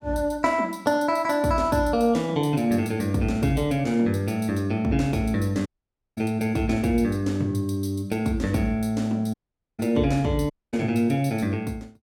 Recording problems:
audio cutting out; at 5.5 s for 0.5 s, at 9.5 s and at 11 s

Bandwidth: 17 kHz